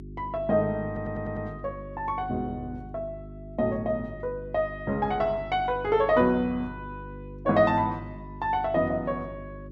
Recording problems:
electrical hum; 50 Hz, harmonics up to 400 Hz, SNR 15 dB
stutter; at 1 s

